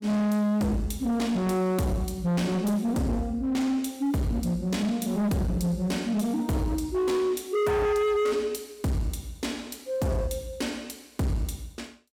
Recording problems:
distortion; hard clipping, signal-to-distortion ratio 7 dB

